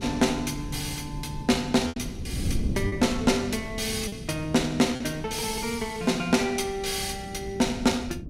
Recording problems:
wind noise; below 210 Hz, SNR 10 dB
lost packets; 2% of the sound replaced, filled with repeated pitch periods

